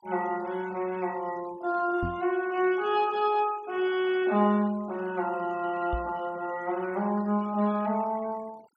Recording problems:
noise reduction artefacts; signal-to-artefact ratio 24 dB
knock on the microphone; at 2 s and at 6 s; peak -1 dB vs average level

